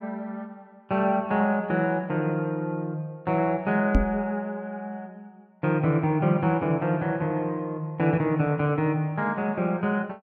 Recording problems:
microphone bump; at 4 s; peak +7 dB vs average level

